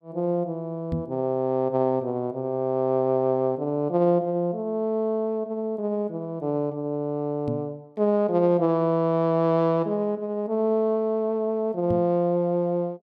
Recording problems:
microphone bump; at 1 s, at 7.5 s and at 12 s; peak -1 dB vs average level

